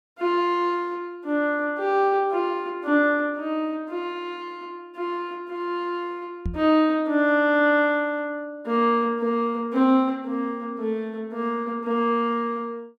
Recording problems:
microphone bump; at 6.5 s; peak -1 dB vs average level

